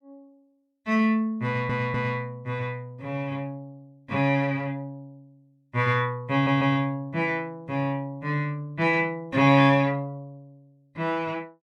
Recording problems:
stutter; at 1.5 s and at 6.5 s

